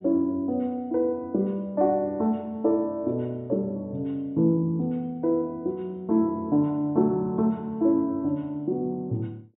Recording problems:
low-pass filter; nothing above 4 kHz

